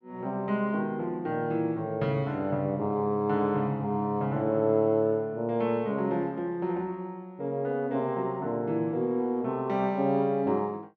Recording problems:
none

